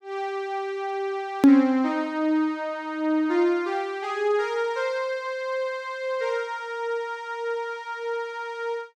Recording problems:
hard cut with a click; at 1.5 s

